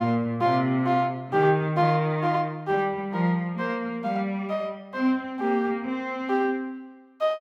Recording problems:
none

